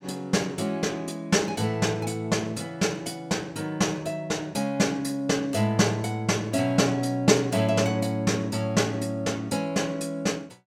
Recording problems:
none

